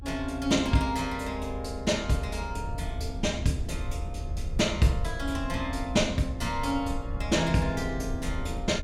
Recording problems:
low-frequency rumble; below 82 Hz, SNR 7 dB

